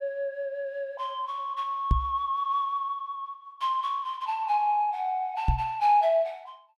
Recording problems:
microphone bump; at 2 s and at 5.5 s; peak +7 dB vs average level

